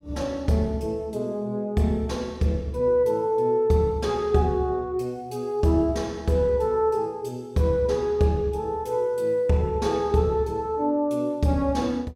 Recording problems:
none

